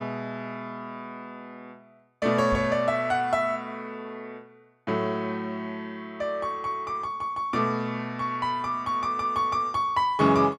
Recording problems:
microphone bump; at 2.5 s; peak -3 dB vs average level

